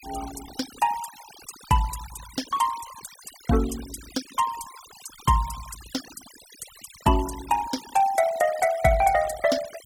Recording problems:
noise reduction artefacts; signal-to-artefact ratio 16 dB

